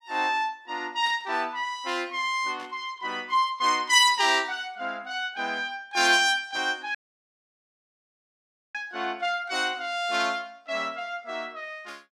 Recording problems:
static burst; 4 times, first at 1 s; peak -14 dB vs average level
dropout; at 7 s for 2 s

